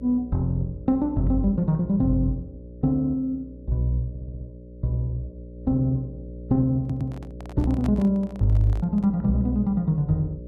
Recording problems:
hum; 60 Hz, harmonics up to 600 Hz, SNR 15 dB
stutter; at 4 s and at 7 s
microphone handling noise; from 7 to 9 s; peak -10 dB vs average level

